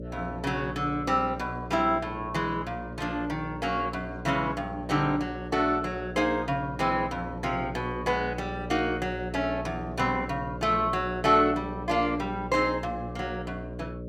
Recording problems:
hum; 60 Hz, harmonics up to 600 Hz, SNR 10 dB

